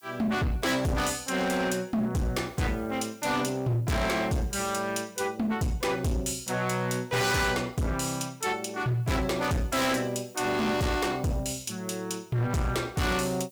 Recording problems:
distorted audio; hard clipping, signal-to-distortion ratio 6 dB
background hiss; slope +5 dB per octave, SNR 29 dB

